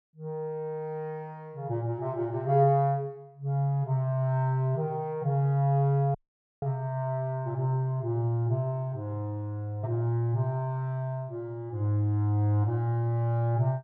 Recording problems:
audio cutting out; at 6 s

